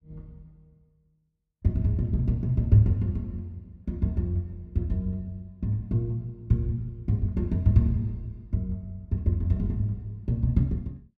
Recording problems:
none

